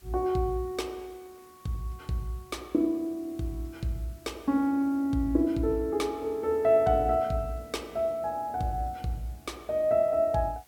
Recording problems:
hiss; slope -1 dB per octave, SNR 28 dB

